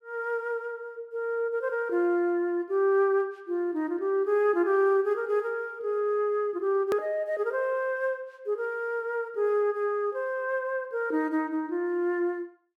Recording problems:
edit click; at 7 s

